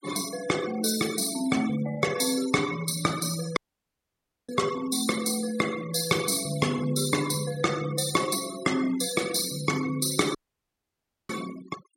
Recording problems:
noise reduction artefacts; signal-to-artefact ratio 13 dB
audio cutting out; at 3.5 s for 1 s and at 10 s for 1 s

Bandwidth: 16.5 kHz